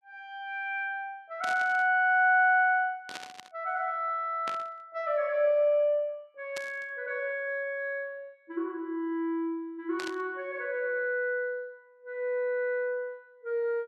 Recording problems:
burst of static; 5 times, first at 1.5 s; peak -5 dB vs average level

